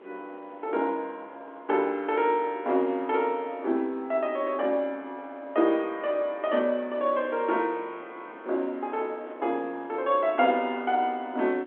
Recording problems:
phone line; 260 Hz to 3.5 kHz, G.711
wind on the microphone; below 940 Hz, SNR 23 dB

